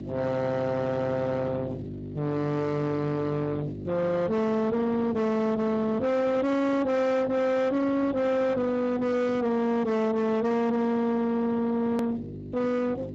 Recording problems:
codec artefacts; Speex, log-spectral distance 3 dB, nothing above 13.1 kHz
distorted audio; soft clipping, signal-to-distortion ratio 7 dB
hum; 50 Hz, harmonics up to 1.3 kHz, SNR 11 dB
edit click; at 12 s

